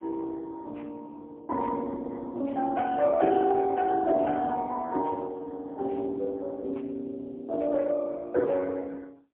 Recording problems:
telephone audio; 260 Hz to 2.2 kHz, AMR-NB, then MP3

